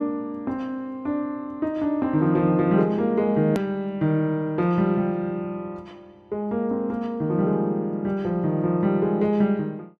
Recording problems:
edit click; at 3.5 s

